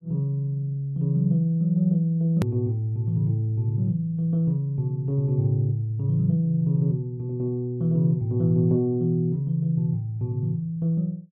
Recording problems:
hard cut with a click; at 2.5 s

